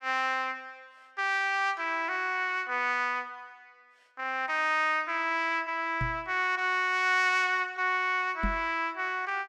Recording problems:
knock on the microphone; at 6 s and at 8.5 s; peak -1 dB vs average level

